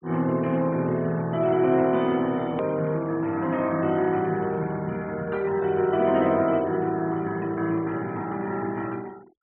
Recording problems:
low-pass filter; nothing above 3.5 kHz
noise reduction artefacts; signal-to-artefact ratio 26 dB
edit click; at 2.5 s

